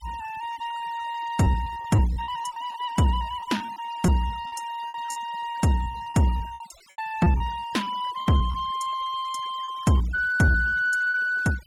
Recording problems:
noise reduction artefacts; signal-to-artefact ratio 22 dB
packet loss; 15% of the sound replaced, filled with repeated pitch periods

